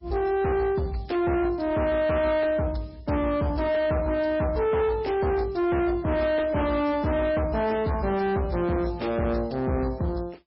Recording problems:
codec artefacts; MP3, log-spectral distance 3 dB, nothing above 5.3 kHz
distortion; soft clipping, signal-to-distortion ratio 7 dB

